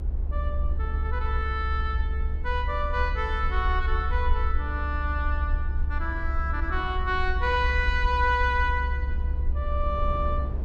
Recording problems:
electrical hum; 50 Hz, harmonics up to 400 Hz, SNR 15 dB
rumble; below 68 Hz, SNR 0 dB
wind noise; below 280 Hz, SNR 15 dB

